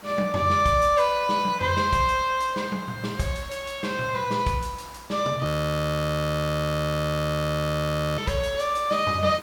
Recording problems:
background hiss; SNR 22 dB
audio freezing; at 5.5 s for 2.5 s

